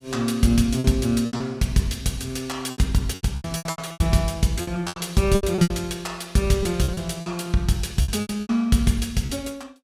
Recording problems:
packet loss; 14% of the sound replaced, filled with repeated pitch periods

